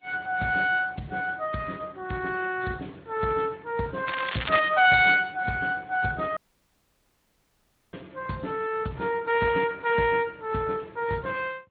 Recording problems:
codec artefacts; AAC, then Speex, log-spectral distance 5 dB, nothing above 3.7 kHz
crackling; at 4 s; loose cable, SNR 8 dB
dropout; at 6.5 s for 1.5 s

